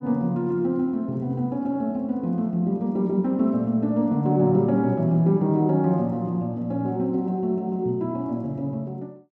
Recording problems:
none

